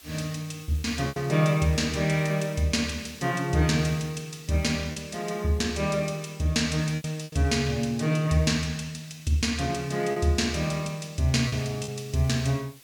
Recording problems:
hiss; slope +1 dB per octave, SNR 24 dB
lost packets; 4% of the sound replaced, filled with repeated pitch periods

